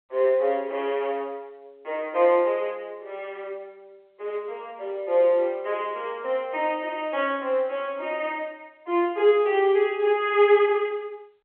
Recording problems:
telephone audio; 320 Hz to 3.3 kHz, G.711

